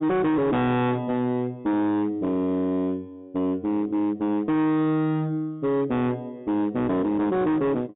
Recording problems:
low-pass filter; nothing above 4 kHz
distortion; hard clipping, signal-to-distortion ratio 6 dB

